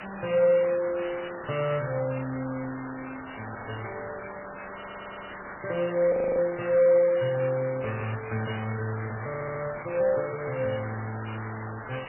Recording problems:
lossy codec; MP3, then Vorbis, log-spectral distance 19 dB, nothing above 2.4 kHz
background hiss; SNR 12 dB
audio stuttering; at 4.5 s and at 9.5 s
audio freezing; at 6 s

